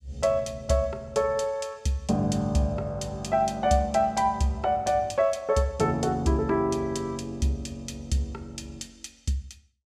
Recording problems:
none

